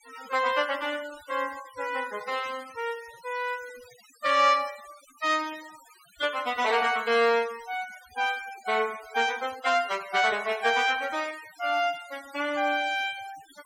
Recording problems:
denoising artefacts; signal-to-artefact ratio 19 dB

